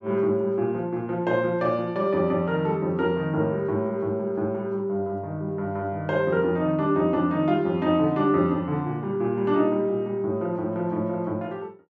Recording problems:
none

